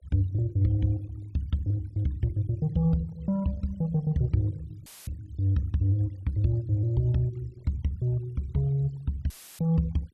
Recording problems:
noise reduction artefacts; signal-to-artefact ratio 28 dB
audio cutting out; at 5 s and at 9.5 s; filled with static

